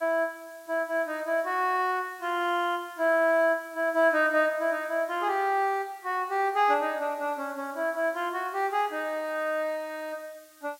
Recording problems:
hiss; SNR 26 dB

